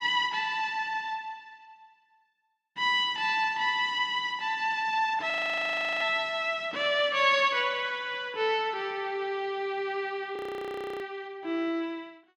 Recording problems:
audio freezing; at 5.5 s for 0.5 s and at 10 s for 0.5 s

